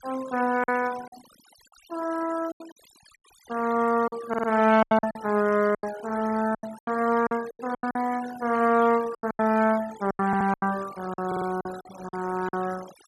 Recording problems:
denoising artefacts; signal-to-artefact ratio 17 dB
lost packets; 13% of the sound replaced, filled with silence
audio stuttering; at 4.5 s, at 10 s and at 11 s

